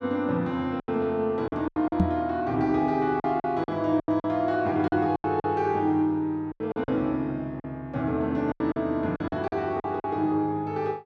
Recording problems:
packet loss; 11% of the sound replaced, filled with silence
microphone thump; at 2 s; peak +8 dB vs average level

